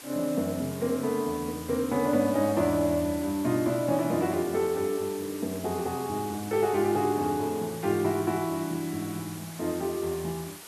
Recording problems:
hiss; slope -1 dB per octave, SNR 14 dB

